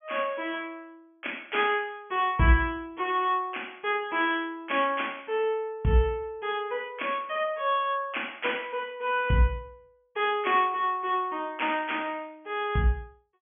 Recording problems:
low-pass filter; nothing above 3.3 kHz

